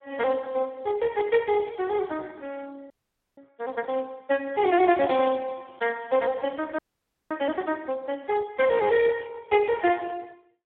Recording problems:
phone line; 280 Hz to 2.2 kHz, Speex
frozen audio; at 3 s and at 7 s for 0.5 s

